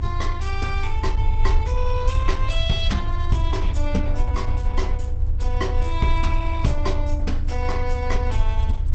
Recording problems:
codec artefacts; Opus, log-spectral distance 2 dB, nothing above 8 kHz
hum; 50 Hz, harmonics up to 300 Hz, SNR 7 dB
rumble; below 70 Hz, strongest tone 22 Hz, SNR -3 dB

